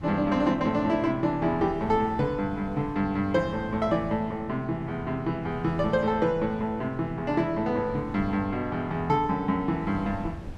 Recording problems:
wind on the microphone; below 200 Hz, SNR 17 dB

